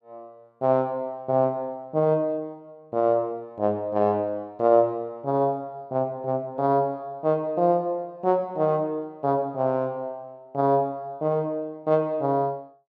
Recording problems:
none

